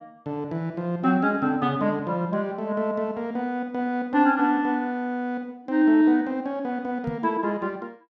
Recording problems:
microphone bump; at 7 s; peak -3 dB vs average level

